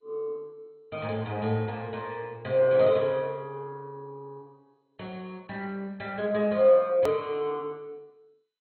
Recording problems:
codec artefacts; MP2, then MP2, log-spectral distance 2 dB, nothing above 18.3 kHz
edit click; at 7 s

